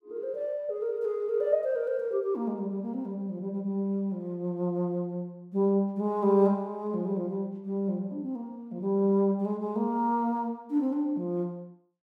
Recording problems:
none

